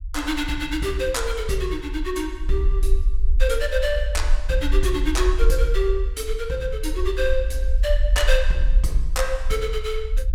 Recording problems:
rumble; below 48 Hz, SNR 0 dB

